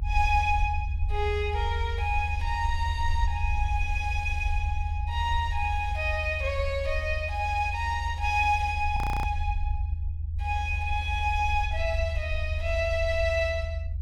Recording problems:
low-frequency rumble; below 80 Hz, SNR 2 dB
frozen audio; at 9 s

